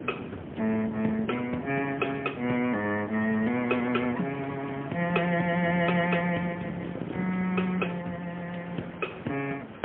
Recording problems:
telephone audio; 220 Hz to 3.3 kHz, AMR-NB, then MP3
background hiss; SNR 18 dB
wind on the microphone; below 440 Hz, SNR 11 dB

